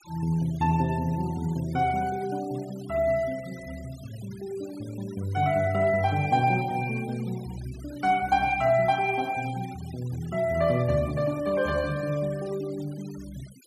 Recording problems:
noise reduction artefacts; signal-to-artefact ratio 21 dB

